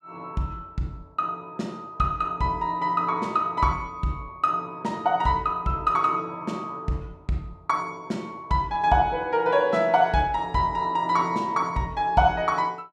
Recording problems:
none

